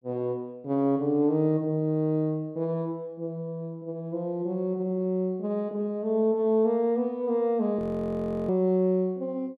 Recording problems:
audio freezing; at 8 s for 0.5 s

